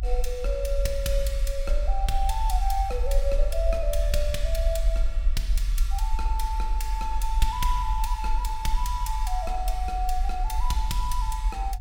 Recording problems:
low-frequency rumble; below 44 Hz, SNR -2 dB

